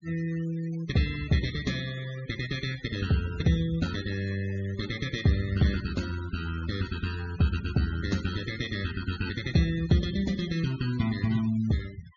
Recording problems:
treble missing; nothing above 6.9 kHz
denoising artefacts; signal-to-artefact ratio 16 dB

